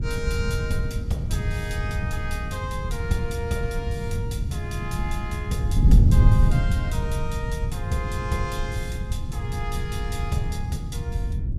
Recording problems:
wind noise; below 120 Hz, SNR -6 dB

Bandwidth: 15.5 kHz